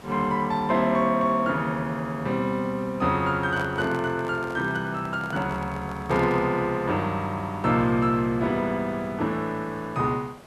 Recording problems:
background hiss; SNR 22 dB
microphone handling noise; from 3.5 to 6.5 s; peak -7 dB vs average level

